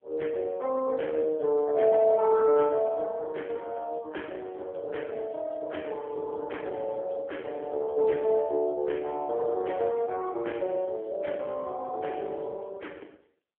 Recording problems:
telephone audio; 240 Hz to 3.3 kHz, AMR-NB

